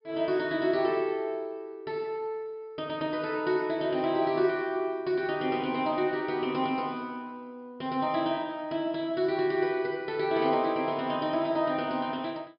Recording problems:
treble cut off; nothing above 5.5 kHz

